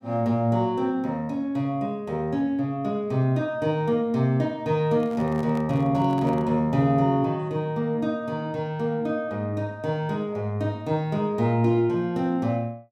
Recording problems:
handling noise; from 5 to 6.5 s; peak -11 dB vs average level

